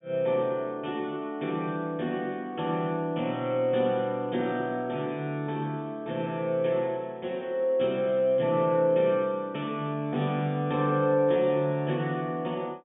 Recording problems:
low-pass filter; nothing above 3.7 kHz

